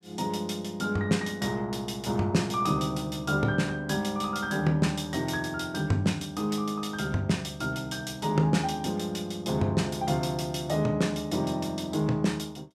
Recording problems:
none

